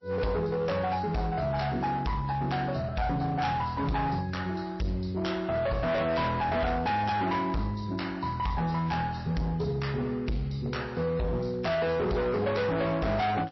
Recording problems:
lossy compression; MP3, log-spectral distance 3 dB, nothing above 5.7 kHz
distortion; hard clipping, signal-to-distortion ratio 7 dB

